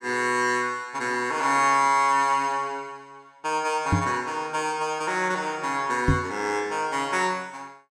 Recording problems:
microphone bump; at 4 s and at 6 s; peak +7 dB vs average level

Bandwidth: 16 kHz